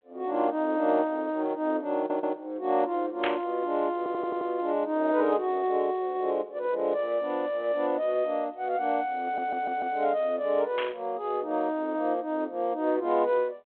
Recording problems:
phone line; 260 Hz to 3.5 kHz, G.726
audio stuttering; at 2 s, at 4 s and at 9 s
static burst; at 3 s and at 11 s; peak +1 dB vs average level

